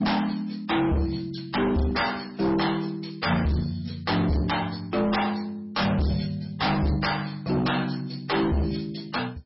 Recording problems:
lossy codec; MP3, log-spectral distance 6 dB, nothing above 5.5 kHz
distorted audio; hard clipping, uneven, signal-to-distortion ratio 6 dB

